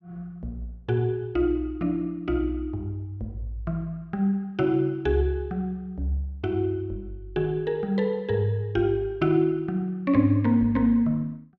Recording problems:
none

